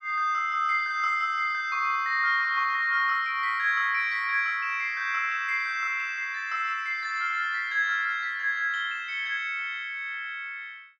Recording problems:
none

